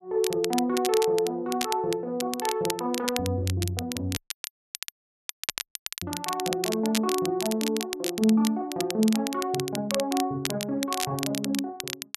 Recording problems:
crackle; vinyl, SNR 7 dB
dropout; at 4 s for 2 s

